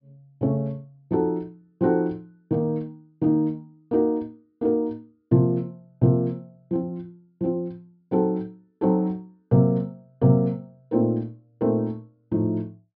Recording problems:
treble cut off; nothing above 5.5 kHz

